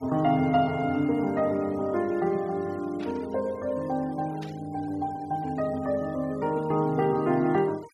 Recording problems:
denoising artefacts; signal-to-artefact ratio 25 dB
burst of static; at 3 s and at 4.5 s; peak -13 dB vs average level

